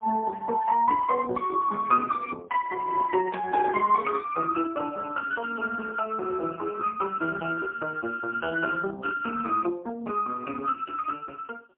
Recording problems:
phone line; 240 Hz to 2.5 kHz, AMR-NB, then MP3

